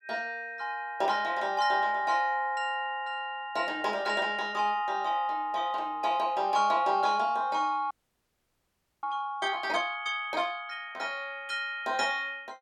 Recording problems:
frozen audio; at 8 s for 1 s

